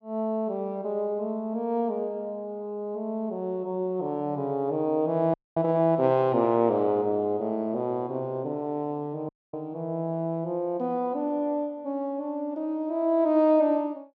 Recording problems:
audio cutting out; at 5.5 s and at 9.5 s

